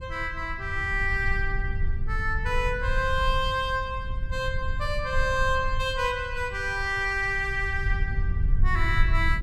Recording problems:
rumble; below 66 Hz, SNR 4 dB

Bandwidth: 14.5 kHz